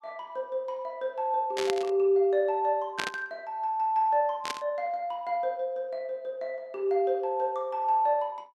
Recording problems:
static burst; at 1.5 s, at 3 s and at 4.5 s; peak +1 dB vs average level

